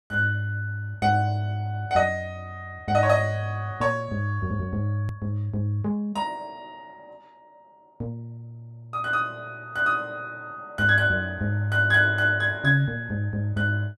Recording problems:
hard cut with a click; at 5 s

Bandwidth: 13 kHz